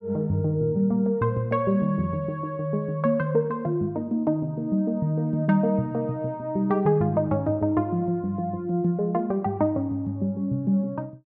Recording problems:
none

